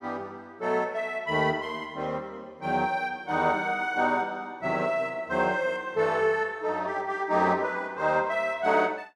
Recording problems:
none

